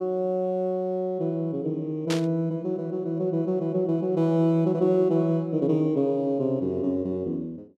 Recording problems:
static burst; at 2 s; peak -2 dB vs average level

